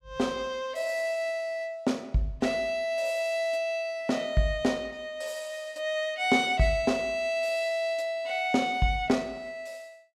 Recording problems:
none

